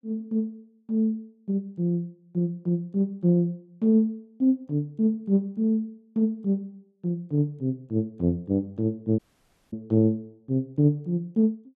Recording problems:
audio cutting out; at 9 s for 0.5 s

